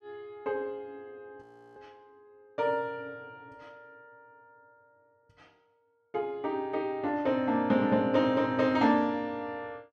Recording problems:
audio freezing; at 1.5 s

